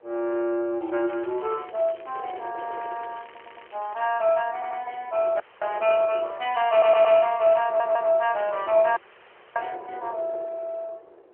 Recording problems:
phone line; 300 Hz to 3.3 kHz, AMR-NB
wind on the microphone; below 630 Hz, SNR 20 dB
crackling; from 1 to 2.5 s, from 2.5 to 4 s and at 6.5 s; loose cable, SNR 25 dB
stutter; 4 times, first at 3.5 s
audio cutting out; at 5.5 s and at 9 s for 0.5 s

